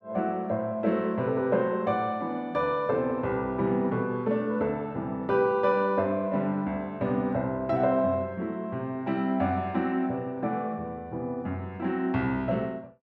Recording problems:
none

